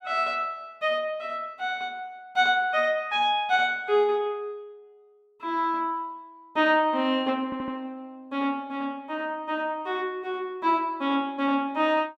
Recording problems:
stutter; at 7.5 s

